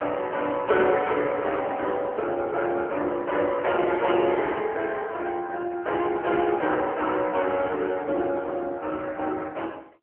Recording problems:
phone line; 280 Hz to 3.2 kHz, AMR-NB

